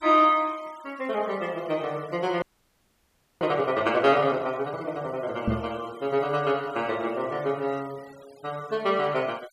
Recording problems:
denoising artefacts; signal-to-artefact ratio 24 dB
frozen audio; at 2.5 s for 1 s
knock on the microphone; at 5.5 s; peak +3 dB vs average level

